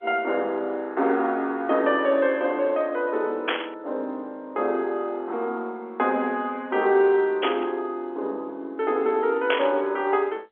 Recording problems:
phone line; 240 Hz to 3.6 kHz, G.711
static burst; at 3.5 s, at 7.5 s and at 9.5 s; peak +3 dB vs average level

